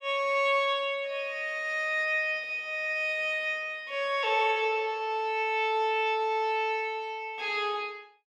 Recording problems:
none

